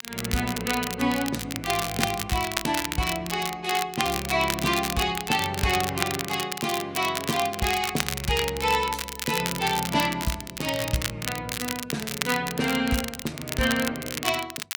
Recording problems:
crackle; vinyl, SNR 5 dB

